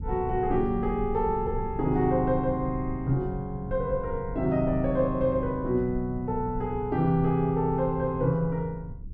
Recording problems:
low-frequency rumble; below 110 Hz, SNR 11 dB

